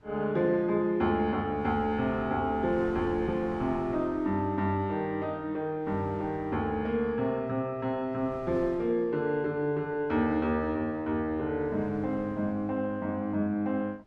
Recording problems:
wind on the microphone; below 450 Hz, SNR 20 dB

